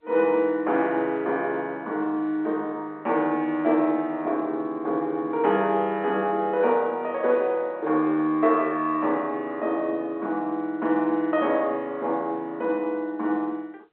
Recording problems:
telephone audio; 240 Hz to 3.8 kHz, G.711

